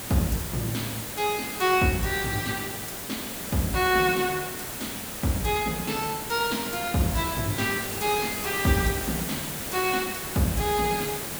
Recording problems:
hiss; slope -3 dB per octave, SNR 5 dB

